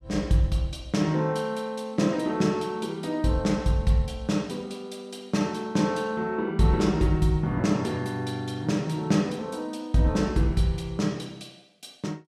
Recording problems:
none

